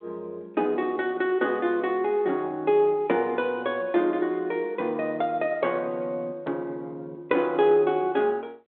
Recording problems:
telephone audio; 260 Hz to 4 kHz, G.726

